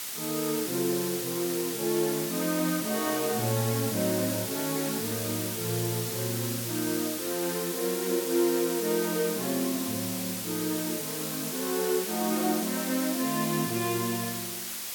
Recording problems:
background hiss; slope +2 dB per octave, SNR 2 dB

